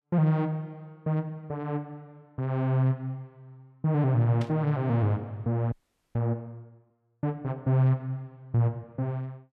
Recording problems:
burst of static; at 4.5 s; peak -10 dB vs average level
frozen audio; at 5.5 s

